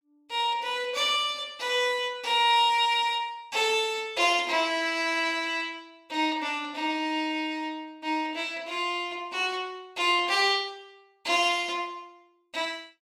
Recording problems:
none

